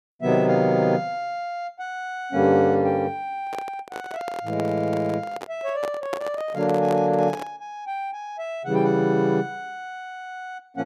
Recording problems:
microphone handling noise; from 3.5 to 7.5 s; peak -2 dB vs average level

